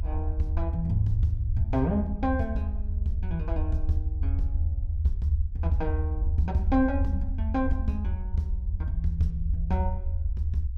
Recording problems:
rumble; below 80 Hz, SNR -1 dB

